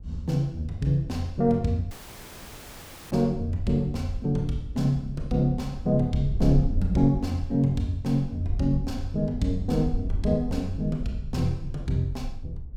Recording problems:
wind noise; below 56 Hz, SNR 10 dB
audio cutting out; at 2 s for 1 s

